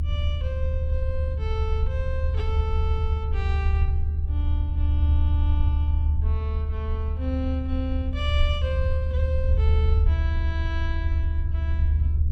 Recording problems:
low-frequency rumble; below 76 Hz, strongest tone 76 Hz, SNR -10 dB

